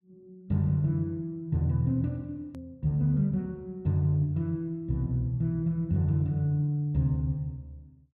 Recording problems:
hard cut with a click; at 2.5 s

